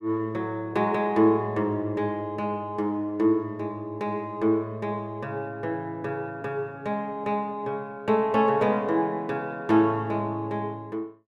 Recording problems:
none

